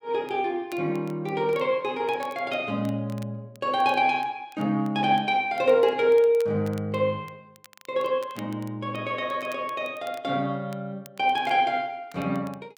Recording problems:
crackle; vinyl, SNR 27 dB

